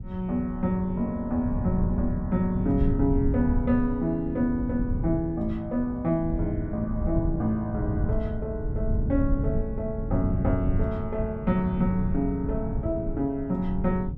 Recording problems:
rumble; below 130 Hz, SNR 3 dB

